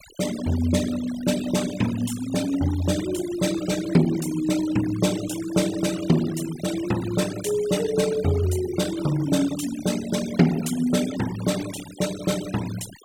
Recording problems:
noise reduction artefacts; signal-to-artefact ratio 13 dB

